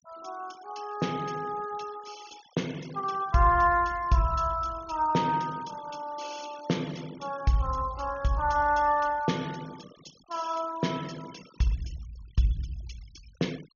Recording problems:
low-pass filter; nothing above 6.8 kHz
denoising artefacts; signal-to-artefact ratio 21 dB

